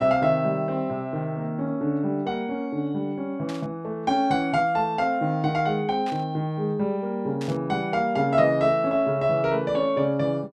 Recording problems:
burst of static; at 3.5 s, at 6 s and at 7.5 s; peak -11 dB vs average level

